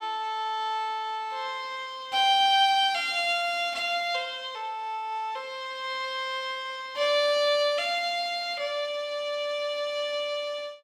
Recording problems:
none

